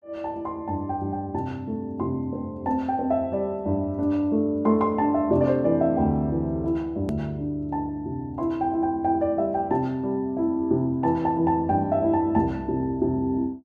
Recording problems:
edit click; at 7 s

